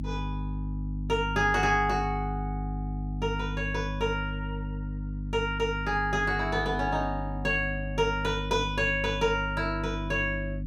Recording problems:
mains hum; 50 Hz, harmonics up to 300 Hz, SNR 6 dB

